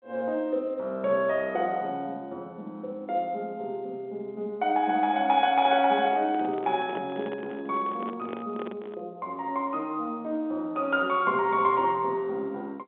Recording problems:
telephone audio; 240 Hz to 3.7 kHz, G.711
handling noise; from 5.5 to 9 s; peak -5 dB vs average level

